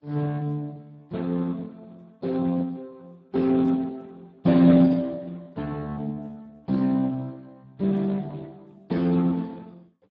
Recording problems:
lossy codec; MP3, then Speex, log-spectral distance 3 dB

